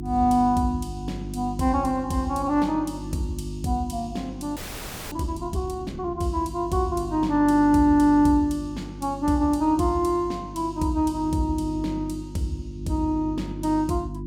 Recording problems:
hum; 50 Hz, harmonics up to 350 Hz, SNR 12 dB
audio freezing; at 4.5 s for 0.5 s

